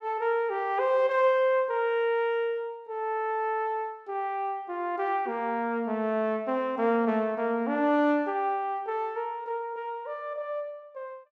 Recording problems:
none

